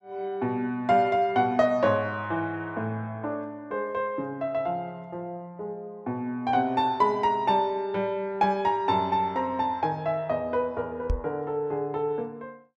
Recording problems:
knock on the microphone; at 11 s; peak +3 dB vs average level

